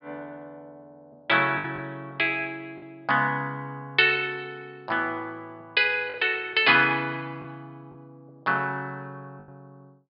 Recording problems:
treble missing; nothing above 5.5 kHz
packet loss; 3% of the sound replaced, filled with the last packet

